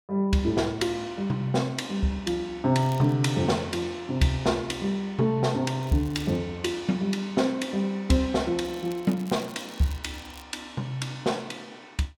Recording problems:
crackle; at 3 s, at 6 s and from 8.5 to 10 s; loose cable, SNR 22 dB

